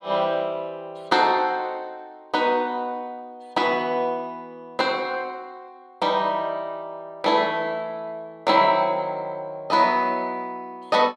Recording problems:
none

